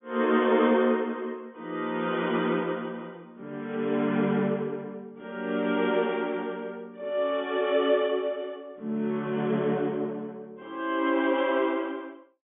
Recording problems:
treble missing; nothing above 3.5 kHz

